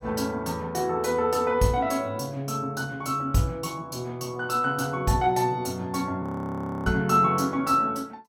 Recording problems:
frozen audio; at 6 s for 0.5 s

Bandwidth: 17 kHz